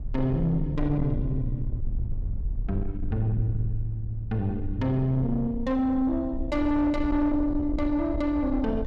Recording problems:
distorted audio; soft clipping, signal-to-distortion ratio 12 dB
rumble; below 82 Hz, SNR 7 dB

